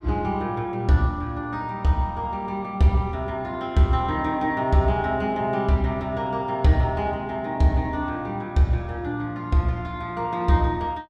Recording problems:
none

